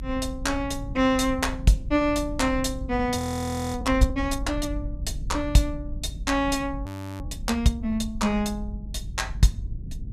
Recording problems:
low-frequency rumble; below 96 Hz, SNR 9 dB
audio freezing; at 3 s for 0.5 s and at 7 s

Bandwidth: 14.5 kHz